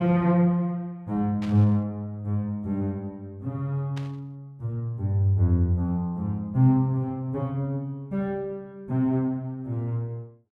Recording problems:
static burst; at 1.5 s and at 4 s; peak -12 dB vs average level

